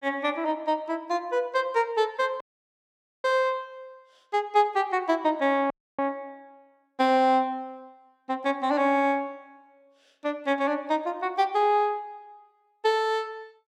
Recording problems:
audio cutting out; at 2.5 s for 1 s and at 5.5 s

